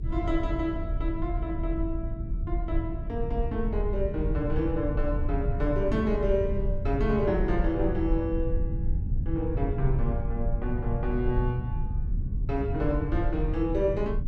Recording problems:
rumble; below 88 Hz, SNR 1 dB

